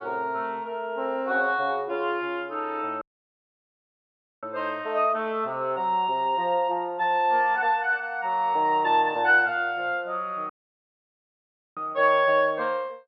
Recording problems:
audio cutting out; at 3 s for 1.5 s and at 10 s for 1.5 s

